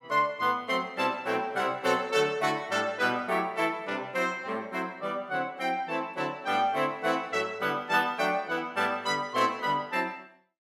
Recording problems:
none

